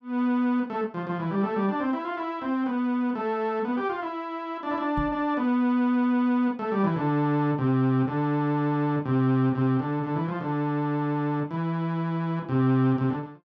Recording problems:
microphone bump; at 5 s; peak -3 dB vs average level

